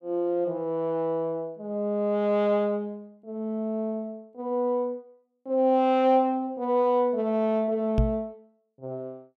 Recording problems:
microphone bump; at 8 s; peak +6 dB vs average level

